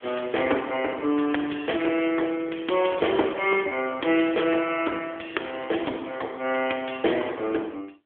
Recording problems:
phone line; 260 Hz to 3.4 kHz, AMR-NB

